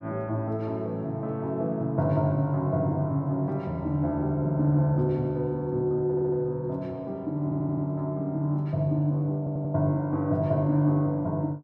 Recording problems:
stutter; at 6 s, at 7.5 s and at 9.5 s

